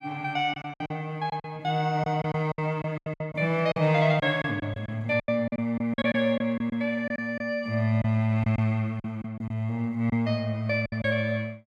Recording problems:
packet loss; 11% of the sound replaced, filled with silence

